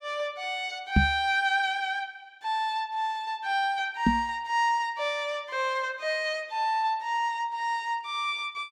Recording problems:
knock on the microphone; at 1 s and at 4 s; peak +10 dB vs average level

